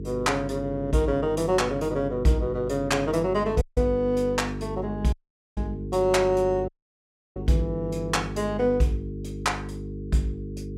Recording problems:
hum; 50 Hz, harmonics up to 450 Hz, SNR 9 dB
audio cutting out; at 3.5 s, at 5 s and at 6.5 s for 0.5 s

